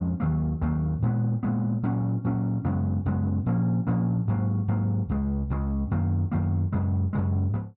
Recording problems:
none

